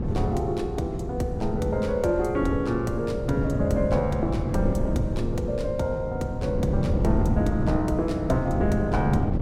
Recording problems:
wind on the microphone; below 220 Hz, SNR 2 dB

